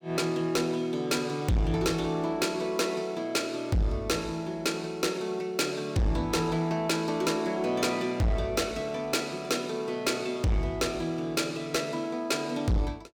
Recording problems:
distortion; soft clipping, signal-to-distortion ratio 8 dB

